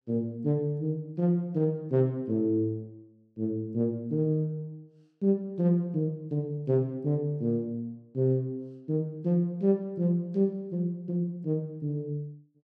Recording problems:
none

